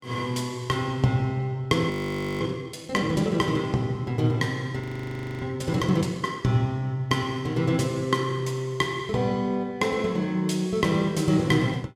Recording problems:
audio freezing; at 2 s for 0.5 s and at 5 s for 0.5 s

